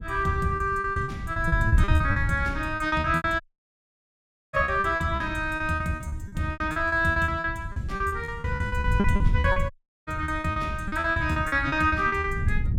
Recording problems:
wind on the microphone; below 110 Hz, SNR 6 dB
packet loss; 20% of the sound replaced, filled with repeated pitch periods
audio cutting out; at 3.5 s for 1 s and at 9.5 s

